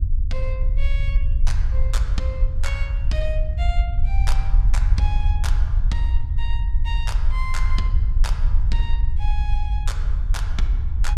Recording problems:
rumble; below 56 Hz, SNR -11 dB

